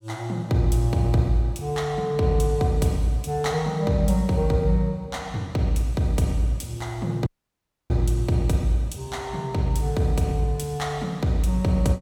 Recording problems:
dropout; at 7.5 s for 0.5 s

